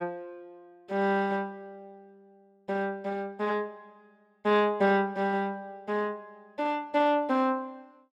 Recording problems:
none

